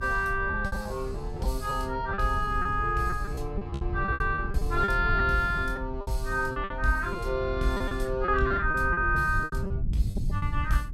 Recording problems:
rumble; below 100 Hz, SNR 6 dB
packet loss; 13% of the sound replaced, filled with repeated pitch periods

